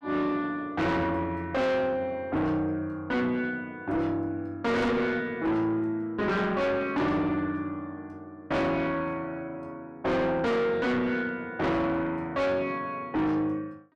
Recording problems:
distorted audio; soft clipping, signal-to-distortion ratio 5 dB

